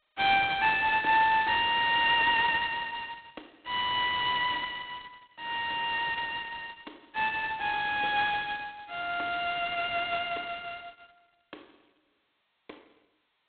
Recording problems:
telephone audio; 240 Hz to 3.7 kHz, G.726

